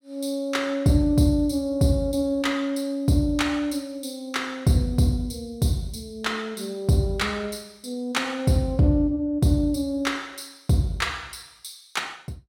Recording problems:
none

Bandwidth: 16.5 kHz